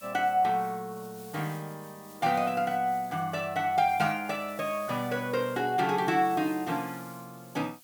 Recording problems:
hiss; slope +1 dB per octave, SNR 21 dB

